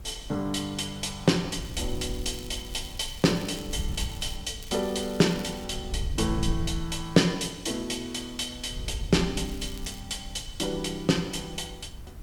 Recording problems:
hiss; slope -5 dB per octave, SNR 24 dB
wind on the microphone; below 80 Hz, SNR 10 dB
crackling; from 1.5 to 4.5 s, from 4.5 to 5.5 s and at 9.5 s; loose cable, SNR 19 dB

